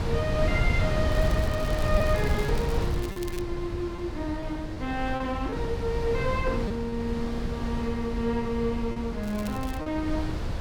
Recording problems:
wind on the microphone; below 180 Hz, SNR 0 dB
lost packets; 3% of the sound replaced, filled with repeated pitch periods
crackling; from 1 to 3.5 s and at 9 s; loose cable, SNR 15 dB

